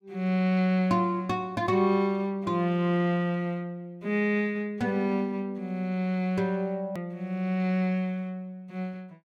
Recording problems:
edit click; at 7 s

